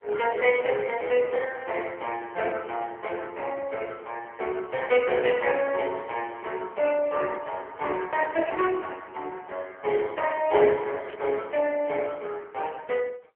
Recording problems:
telephone audio; 340 Hz to 3.1 kHz, AMR-NB
static burst; at 1 s, at 3 s and at 11 s; peak -13 dB vs average level

